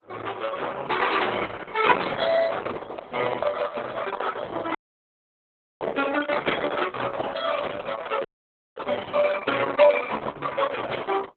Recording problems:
lossy codec; Opus, then Opus, log-spectral distance 5 dB
microphone handling noise; from 2.5 to 5 s; peak +1 dB vs average level
dropout; at 5 s for 1 s and at 8.5 s for 0.5 s

